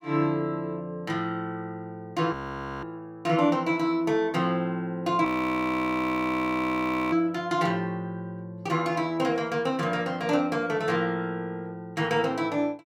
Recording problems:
frozen audio; at 2.5 s for 0.5 s and at 5.5 s for 2 s

